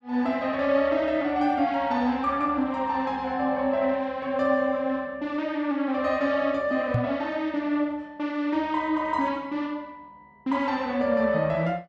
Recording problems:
knock on the microphone; at 7 s; peak +4 dB vs average level

